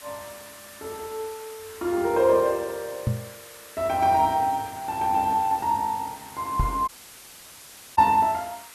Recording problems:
hiss; SNR 19 dB
microphone thump; at 3 s and at 6.5 s; peak +3 dB vs average level
audio cutting out; at 7 s for 1 s

